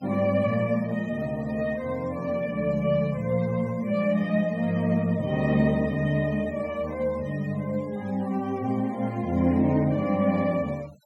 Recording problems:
denoising artefacts; signal-to-artefact ratio 25 dB

